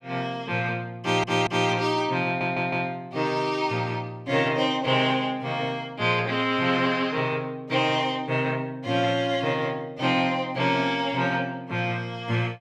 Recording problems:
stutter; at 1 s and at 2.5 s

